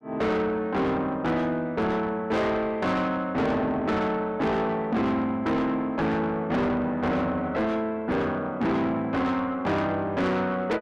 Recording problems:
distortion; soft clipping, signal-to-distortion ratio 7 dB

